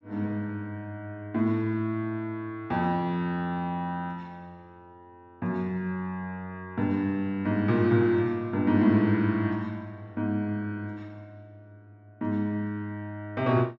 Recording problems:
low-pass filter; nothing above 8 kHz

